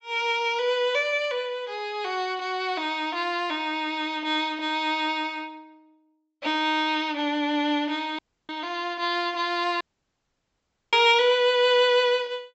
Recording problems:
treble missing; nothing above 7.8 kHz
audio cutting out; at 8 s and at 10 s for 1 s

